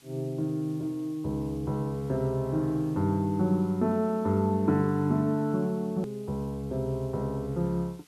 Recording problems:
hiss; slope 0 dB per octave, SNR 28 dB
click at an edit; at 6 s

